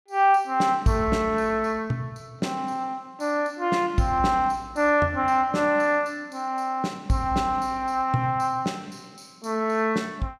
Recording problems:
none

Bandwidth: 15 kHz